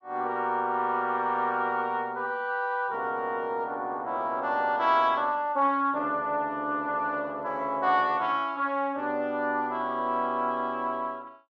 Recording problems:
none

